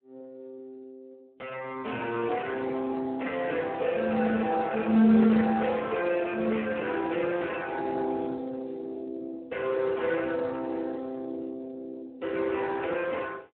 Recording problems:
telephone audio; 170 Hz to 3.4 kHz, Speex

